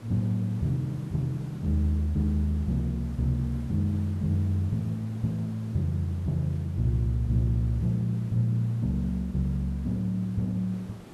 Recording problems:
background hiss; slope -7 dB per octave, SNR 19 dB

